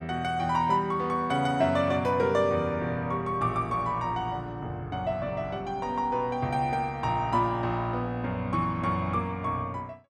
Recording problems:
none

